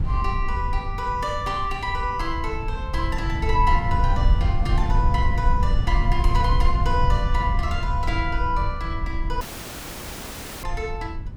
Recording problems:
low-frequency rumble; below 76 Hz, SNR -1 dB
dropout; at 9.5 s for 1 s

